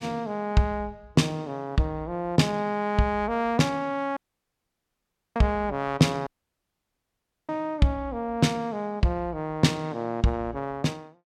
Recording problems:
audio cutting out; at 4 s for 1 s and at 6.5 s for 1 s

